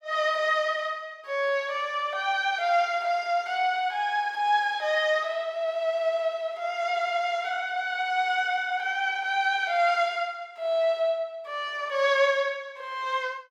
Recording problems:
none

